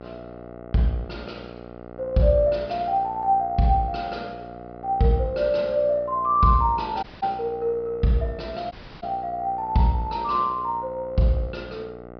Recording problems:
treble cut off; nothing above 5.5 kHz
hum; 60 Hz, harmonics up to 2 kHz, SNR 17 dB
dropout; at 7 s and at 8.5 s

